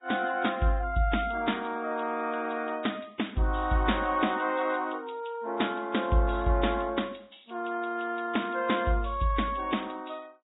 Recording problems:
treble cut off; nothing above 3.8 kHz
codec artefacts; Vorbis, log-spectral distance 4 dB

